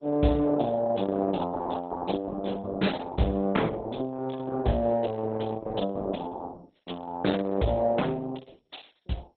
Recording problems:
lossy compression; Opus, then MP2, log-spectral distance 4 dB, nothing above 4 kHz

